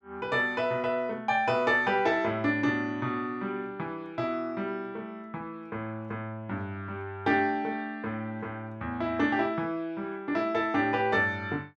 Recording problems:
none

